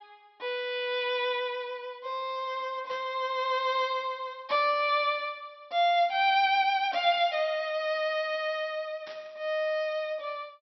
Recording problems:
treble missing; nothing above 5.8 kHz
static burst; 4 times, first at 3 s; peak -13 dB vs average level

